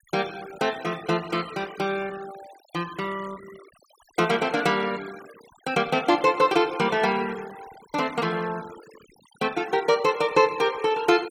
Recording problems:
noise reduction artefacts; signal-to-artefact ratio 19 dB

